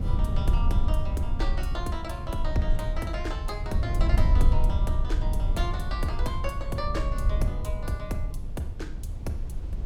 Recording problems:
rumble; below 66 Hz, SNR -5 dB
wind noise; below 540 Hz, SNR 20 dB

